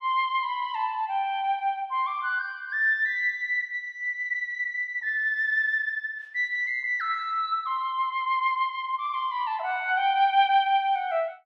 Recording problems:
none

